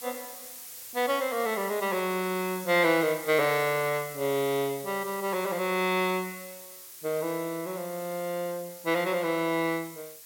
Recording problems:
hiss; slope +2 dB per octave, SNR 13 dB

